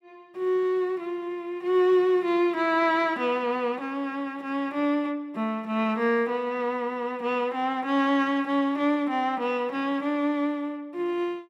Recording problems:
none

